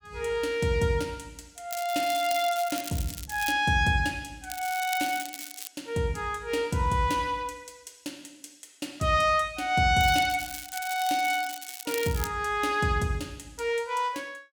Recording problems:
crackling; from 1.5 to 3.5 s, from 4.5 to 5.5 s and from 10 to 12 s; loose cable, SNR 11 dB

